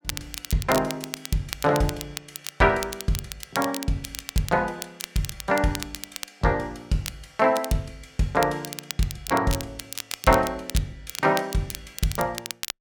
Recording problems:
crackling; vinyl, SNR 9 dB

